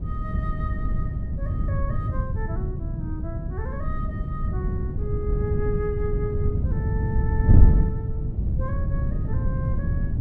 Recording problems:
wind noise; below 120 Hz, SNR -10 dB

